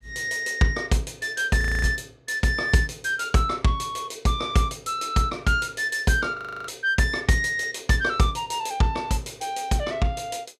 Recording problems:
frozen audio; at 1.5 s and at 6.5 s

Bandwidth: 14 kHz